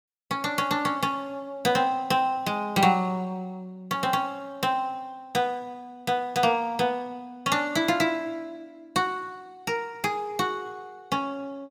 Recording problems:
none

